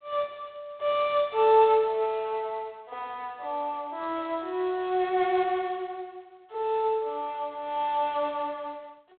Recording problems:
telephone audio; 300 Hz to 4 kHz, G.726

